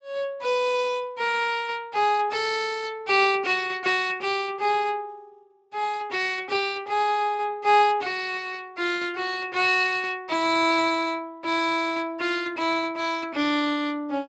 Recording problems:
codec artefacts; Speex, log-spectral distance 4 dB, nothing above 8 kHz

